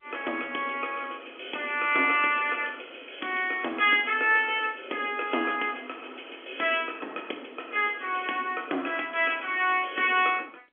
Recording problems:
phone line; 240 Hz to 3.4 kHz, G.711

